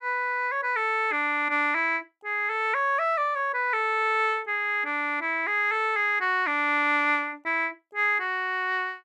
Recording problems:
none

